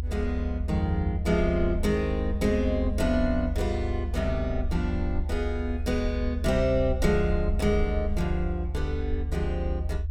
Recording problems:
low-frequency rumble; below 76 Hz, SNR 2 dB

